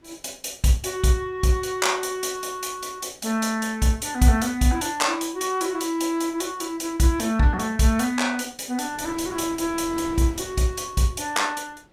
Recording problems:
wind on the microphone; below 820 Hz, SNR 24 dB

